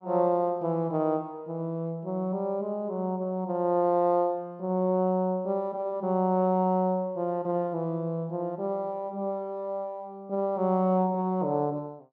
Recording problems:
none

